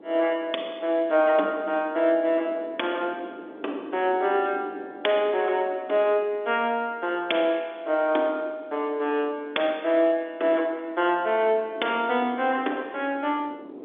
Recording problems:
phone line; 260 Hz to 3.6 kHz, G.711
wind on the microphone; below 470 Hz, SNR 19 dB

